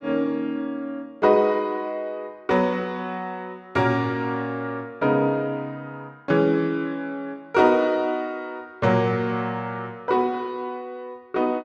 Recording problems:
none

